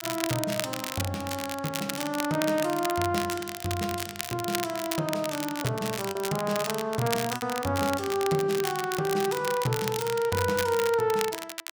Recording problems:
crackle; vinyl, SNR 6 dB
lost packets; 1.3% of the sound replaced, filled with repeated pitch periods

